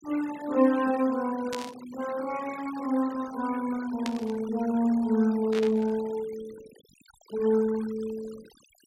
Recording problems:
denoising artefacts; signal-to-artefact ratio 19 dB
static burst; at 1.5 s, at 4 s and at 5.5 s; peak -3 dB vs average level

